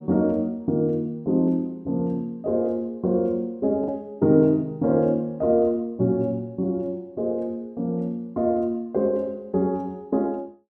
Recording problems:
packet loss; 0.4% of the sound replaced, filled with the last packet

